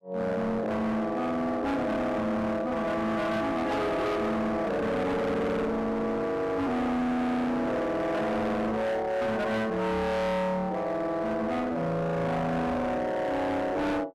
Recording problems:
distortion; hard clipping, signal-to-distortion ratio 7 dB

